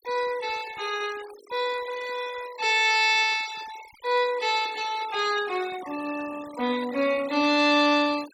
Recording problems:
noise reduction artefacts; signal-to-artefact ratio 18 dB

